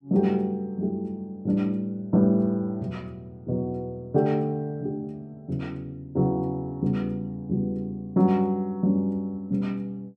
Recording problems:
none

